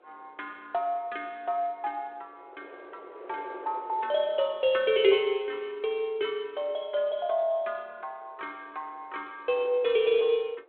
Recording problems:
phone line; 320 Hz to 3.5 kHz, G.726
wind noise; below 690 Hz, SNR 21 dB

